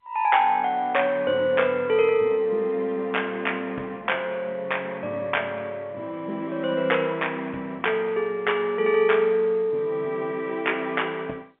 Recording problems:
phone line; 260 Hz to 3.4 kHz, G.711

